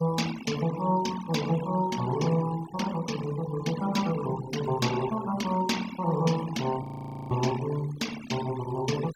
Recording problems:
denoising artefacts; signal-to-artefact ratio 12 dB
frozen audio; at 7 s

